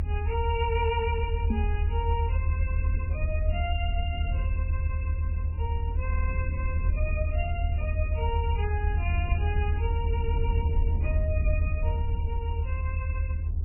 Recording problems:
lossy codec; MP3, log-spectral distance 2 dB, nothing above 2.6 kHz
low-frequency rumble; below 80 Hz, SNR -7 dB
microphone thump; at 1.5 s; peak +9 dB vs average level
stutter; at 6 s
crackle; from 9 to 11 s; loose cable, SNR 27 dB

